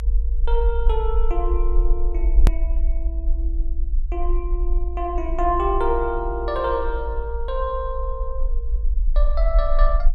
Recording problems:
rumble; below 52 Hz, strongest tone 22 Hz, SNR -2 dB
edit click; at 2.5 s

